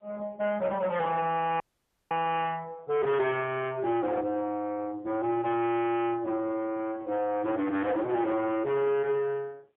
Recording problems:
phone line; 220 Hz to 3.5 kHz, AMR-NB, then MP3
distortion; soft clipping, signal-to-distortion ratio 8 dB
frozen audio; at 1.5 s for 0.5 s

